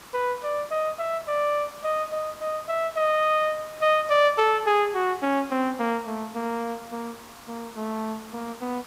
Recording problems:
background hiss; SNR 19 dB

